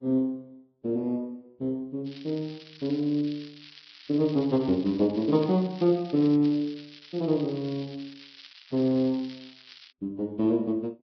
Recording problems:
lossy compression; Vorbis, log-spectral distance 8 dB, nothing above 11.3 kHz
crackle; from 2 to 6.5 s and from 6.5 to 10 s; loose cable, SNR 21 dB

